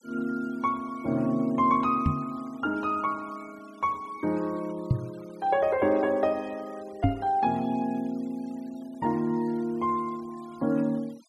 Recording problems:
noise reduction artefacts; signal-to-artefact ratio 26 dB
knock on the microphone; at 2 s, at 5 s and at 7 s; peak +8 dB vs average level

